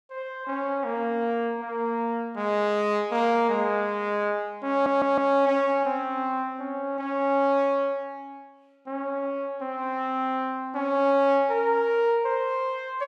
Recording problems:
stutter; at 4.5 s

